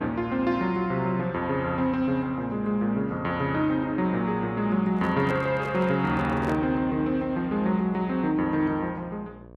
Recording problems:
hum; 60 Hz, harmonics up to 1.2 kHz, SNR 22 dB
handling noise; from 5 to 6.5 s; peak -6 dB vs average level

